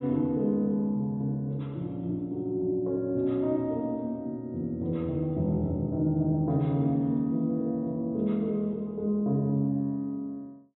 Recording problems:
treble cut off; nothing above 4 kHz

